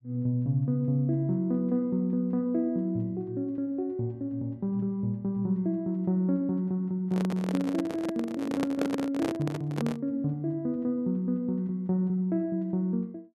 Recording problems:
microphone handling noise; from 7 to 10 s; peak +3 dB vs average level

